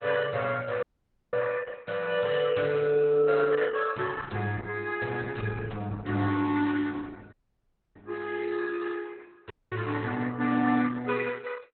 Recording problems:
codec artefacts; Opus, log-spectral distance 4 dB, nothing above 4 kHz
dropout; at 1 s for 0.5 s, at 7.5 s for 0.5 s and at 9.5 s

